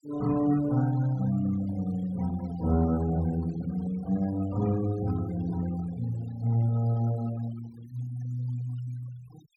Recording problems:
denoising artefacts; signal-to-artefact ratio 20 dB

